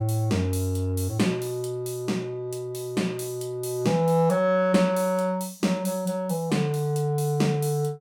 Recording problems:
none

